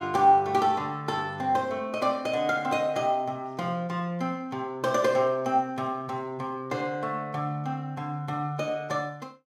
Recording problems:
none

